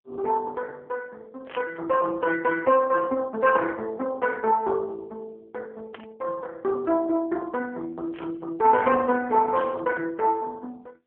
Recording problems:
phone line; 260 Hz to 2 kHz, AMR-NB
static burst; 4 times, first at 1.5 s; peak -12 dB vs average level

